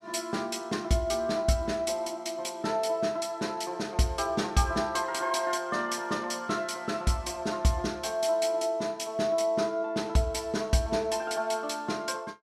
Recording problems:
none

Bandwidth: 15 kHz